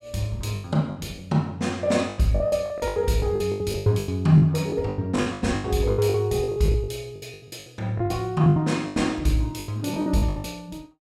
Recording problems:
packet loss; 20% of the sound replaced, filled with the last packet

